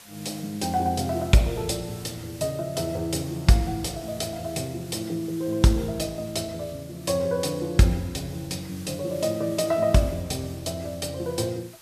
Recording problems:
hiss; slope 0 dB per octave, SNR 20 dB

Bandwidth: 14.5 kHz